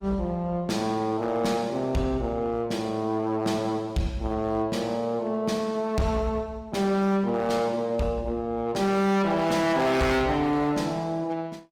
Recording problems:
lossy compression; Opus, log-spectral distance 2 dB, nothing above 19 kHz
distorted audio; hard clipping, signal-to-distortion ratio 11 dB

